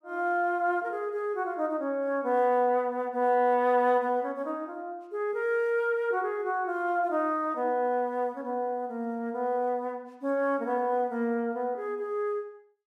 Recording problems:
none

